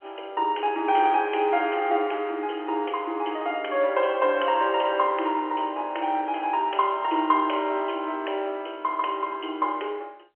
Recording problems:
telephone audio; 280 Hz to 3.2 kHz, G.711

